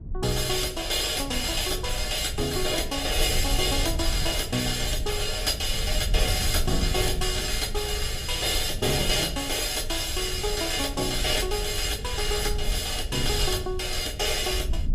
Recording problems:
low-frequency rumble; below 72 Hz, SNR 8 dB

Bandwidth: 15.5 kHz